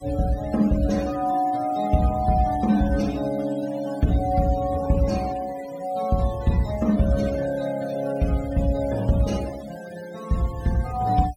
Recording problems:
noise reduction artefacts; signal-to-artefact ratio 19 dB

